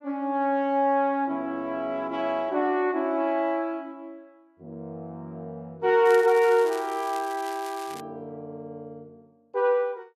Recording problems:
crackling; from 6 to 8 s; loose cable, SNR 19 dB

